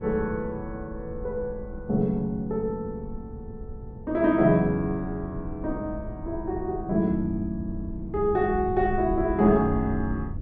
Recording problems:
rumble; below 100 Hz, SNR 12 dB

